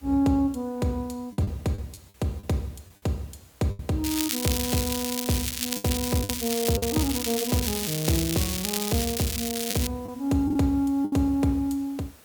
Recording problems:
background hiss; slope -3 dB per octave, SNR 25 dB
packet loss; 5% of the sound replaced, filled with the last packet
crackling; from 4 to 10 s; loose cable, SNR 2 dB

